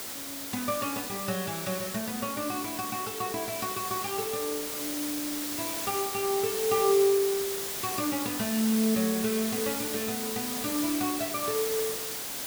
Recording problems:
background hiss; slope -1 dB per octave, SNR 2 dB

